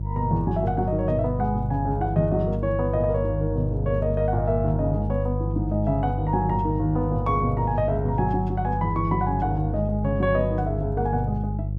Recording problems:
hum; 50 Hz, harmonics up to 350 Hz, SNR 3 dB

